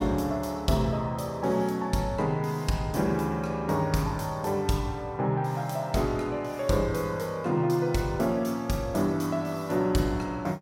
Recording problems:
none

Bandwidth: 16.5 kHz